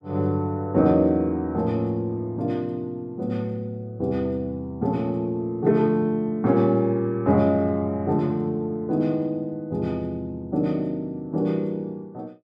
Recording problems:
none

